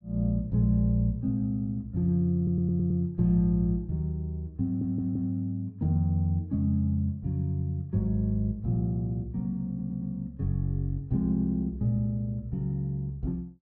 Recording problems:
stutter; at 2.5 s, at 4.5 s and at 9.5 s

